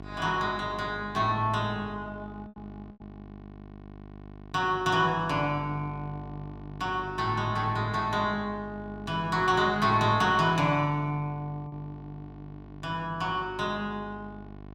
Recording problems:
electrical hum; 50 Hz, harmonics up to 1.4 kHz, SNR 16 dB
lost packets; 1.5% of the sound replaced, filled with repeated pitch periods

